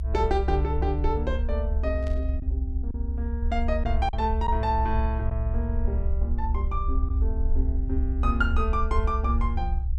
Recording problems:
rumble; below 68 Hz, SNR -2 dB
packet loss; 1.3% of the sound replaced, filled with silence
static burst; at 2 s; peak -13 dB vs average level

